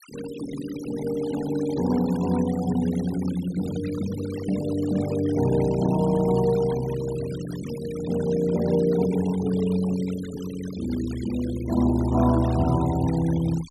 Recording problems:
noise reduction artefacts; signal-to-artefact ratio 16 dB

